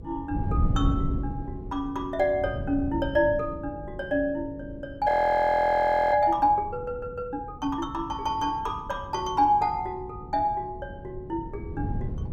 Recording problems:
electrical hum; 50 Hz, harmonics up to 500 Hz, SNR 21 dB
wind noise; below 150 Hz, SNR 9 dB
frozen audio; at 5 s for 1 s

